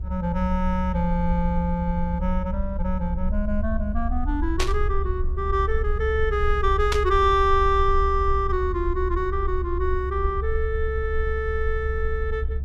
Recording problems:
rumble; below 68 Hz, SNR 3 dB
burst of static; at 4.5 s and at 7 s; peak +3 dB vs average level

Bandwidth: 14 kHz